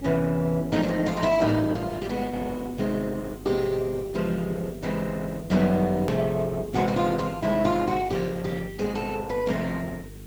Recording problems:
lossy compression; Opus, log-spectral distance 3 dB
hum; 50 Hz, harmonics up to 450 Hz, SNR 17 dB
background hiss; slope 0 dB per octave, SNR 24 dB
hard cut with a click; at 6 s

